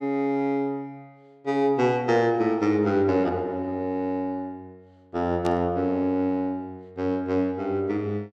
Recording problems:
static burst; at 5.5 s; peak -10 dB vs average level

